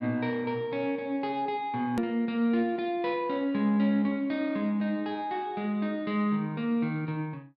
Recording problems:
treble missing; nothing above 5.9 kHz
click at an edit; at 2 s

